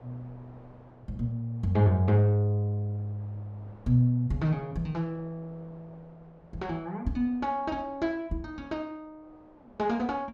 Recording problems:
wind noise; below 780 Hz, SNR 27 dB

